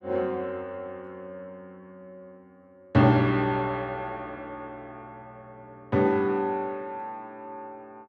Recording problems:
none

